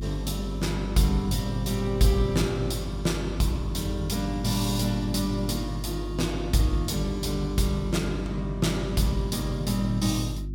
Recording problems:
hum; 50 Hz, harmonics up to 350 Hz, SNR 7 dB

